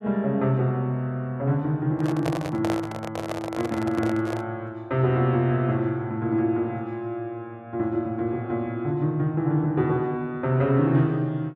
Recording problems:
handling noise; from 2 to 4.5 s; peak 0 dB vs average level

